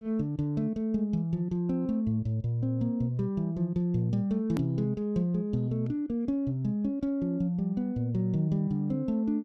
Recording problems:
edit click; at 4.5 s

